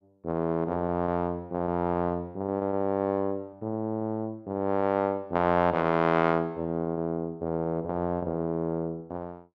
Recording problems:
packet loss; 9% of the sound replaced, filled with repeated pitch periods

